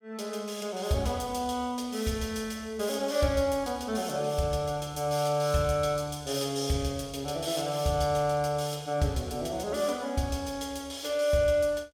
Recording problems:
none

